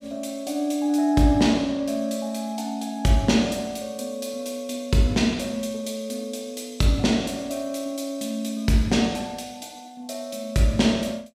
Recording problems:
none

